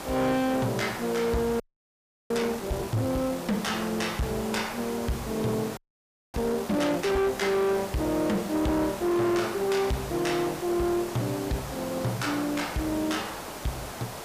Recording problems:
distorted audio; hard clipping, signal-to-distortion ratio 10 dB
hiss; SNR 10 dB
audio freezing; at 1.5 s for 0.5 s and at 6 s for 0.5 s

